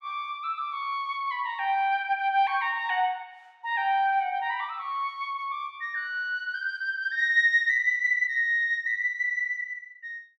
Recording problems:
none

